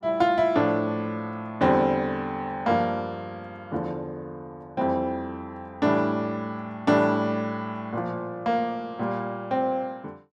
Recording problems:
none

